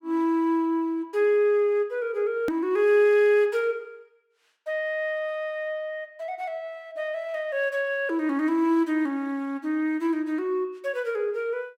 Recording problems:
edit click; at 2.5 s

